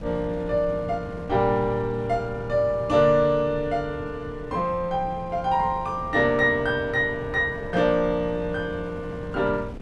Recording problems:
wind on the microphone; below 250 Hz, SNR 15 dB

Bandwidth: 12 kHz